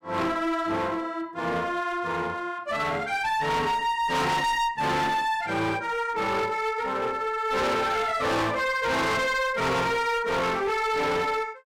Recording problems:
distorted audio; hard clipping, uneven, signal-to-distortion ratio 6 dB

